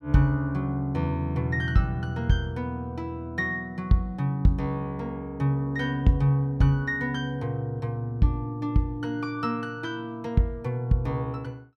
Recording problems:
none

